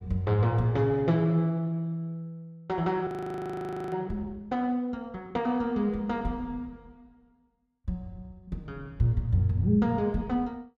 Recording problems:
frozen audio; at 3 s for 1 s

